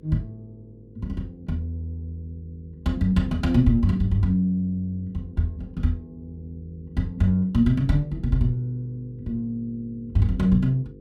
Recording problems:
electrical hum; 50 Hz, harmonics up to 500 Hz, SNR 23 dB

